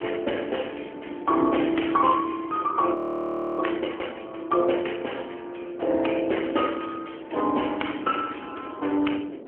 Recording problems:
phone line; 260 Hz to 3.2 kHz, AMR-NB
wind on the microphone; below 500 Hz, SNR 16 dB
frozen audio; at 3 s for 0.5 s

